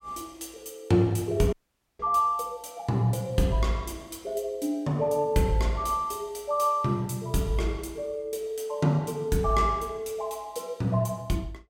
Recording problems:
audio cutting out; at 1.5 s

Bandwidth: 16.5 kHz